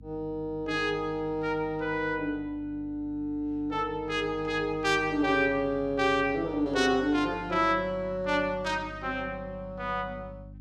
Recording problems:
hum; 50 Hz, harmonics up to 300 Hz, SNR 18 dB

